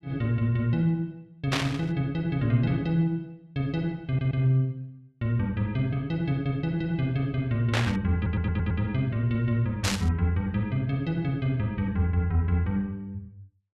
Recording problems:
burst of static; at 1.5 s, at 7.5 s and at 10 s; peak +4 dB vs average level
stutter; at 4 s and at 8 s

